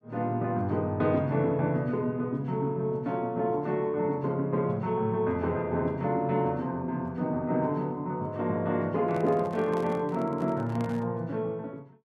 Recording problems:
handling noise; from 9 to 11 s; peak -8 dB vs average level

